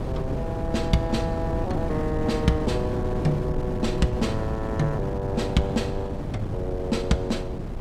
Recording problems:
wind noise; below 290 Hz, SNR 2 dB

